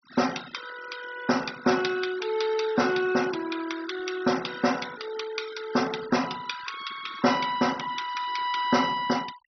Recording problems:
low-pass filter; nothing above 5.9 kHz
denoising artefacts; signal-to-artefact ratio 16 dB

